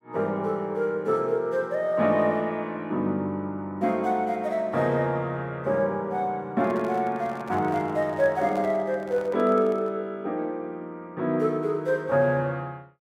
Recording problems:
microphone handling noise; from 6.5 to 10 s; peak -9 dB vs average level

